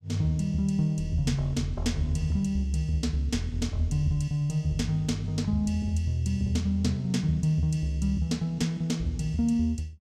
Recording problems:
none

